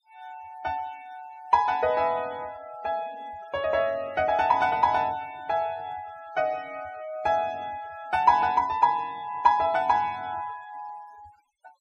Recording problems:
noise reduction artefacts; signal-to-artefact ratio 27 dB

